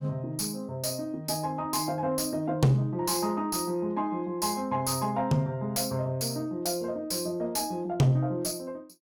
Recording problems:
distortion; soft clipping, signal-to-distortion ratio 11 dB

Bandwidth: 18 kHz